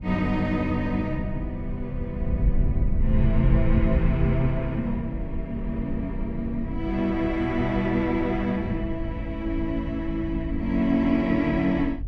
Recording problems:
wind noise; below 82 Hz, SNR 5 dB

